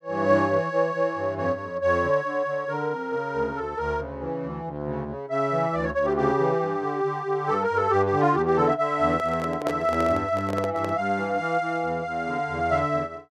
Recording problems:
microphone handling noise; from 9 to 11 s; peak -1 dB vs average level

